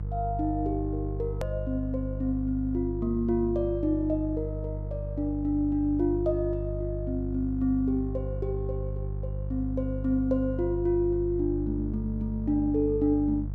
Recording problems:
mains hum; 50 Hz, harmonics up to 350 Hz, SNR 5 dB
hard cut with a click; at 1.5 s

